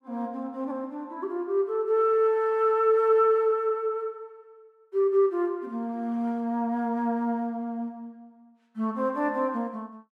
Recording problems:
none

